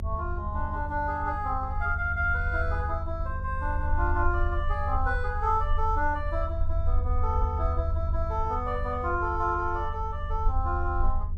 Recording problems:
hum; 50 Hz, harmonics up to 650 Hz, SNR 14 dB
low-frequency rumble; below 80 Hz, SNR 2 dB

